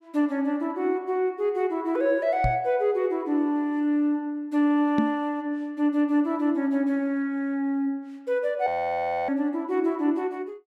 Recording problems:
microphone thump; at 2.5 s and at 5 s; peak +4 dB vs average level
audio freezing; at 8.5 s for 0.5 s

